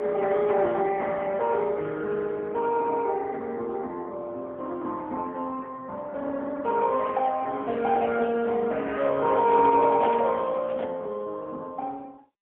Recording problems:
telephone audio; 280 Hz to 3.3 kHz, AMR-NB, then MP3
microphone handling noise; from 9.5 to 11 s; peak -1 dB vs average level

